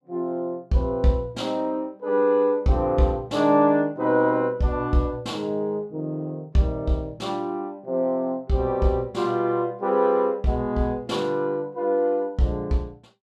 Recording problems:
none

